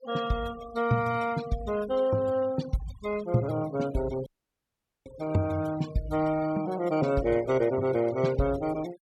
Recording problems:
noise reduction artefacts; signal-to-artefact ratio 17 dB
dropout; at 4.5 s for 1 s

